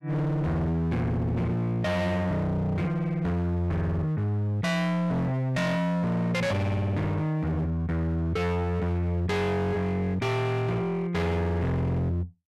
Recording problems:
distorted audio; hard clipping, signal-to-distortion ratio 6 dB

